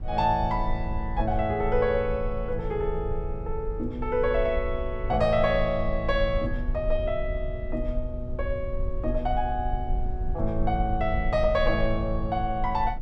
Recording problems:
low-frequency rumble; below 56 Hz, strongest tone 22 Hz, SNR 6 dB

